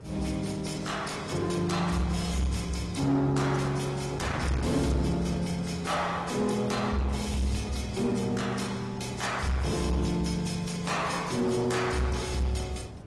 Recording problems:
lossy compression; Opus, then AAC, log-spectral distance 5 dB, nothing above 11 kHz
distorted audio; soft clipping, signal-to-distortion ratio 11 dB
wind noise; below 370 Hz, SNR 14 dB

